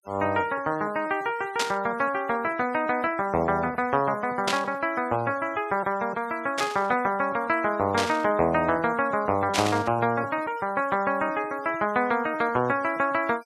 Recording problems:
denoising artefacts; signal-to-artefact ratio 24 dB
static burst; 5 times, first at 1.5 s; peak +3 dB vs average level

